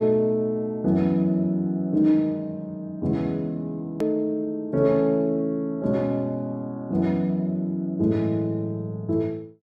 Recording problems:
edit click; at 4 s

